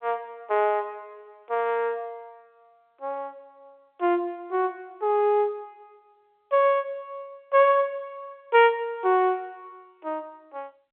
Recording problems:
phone line; 300 Hz to 3.7 kHz, G.711

